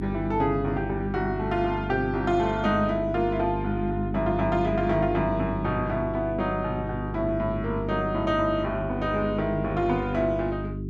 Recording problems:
hum; 50 Hz, harmonics up to 400 Hz, SNR 6 dB

